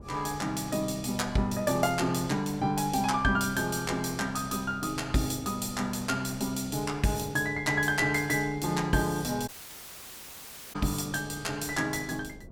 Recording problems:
wind on the microphone; below 300 Hz, SNR 19 dB
audio cutting out; at 9.5 s for 1.5 s

